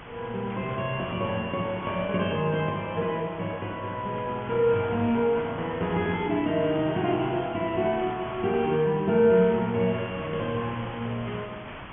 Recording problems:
treble cut off; nothing above 3.3 kHz
background hiss; SNR 14 dB

